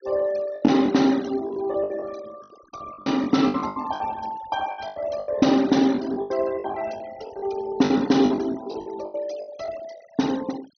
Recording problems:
treble cut off; nothing above 6.3 kHz
noise reduction artefacts; signal-to-artefact ratio 20 dB
packet loss; 15% of the sound replaced, filled with the last packet

